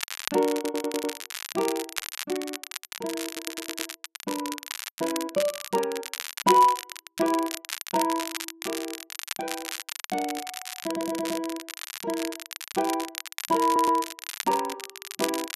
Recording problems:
crackling; vinyl, SNR 7 dB
audio stuttering; 4 times, first at 0.5 s

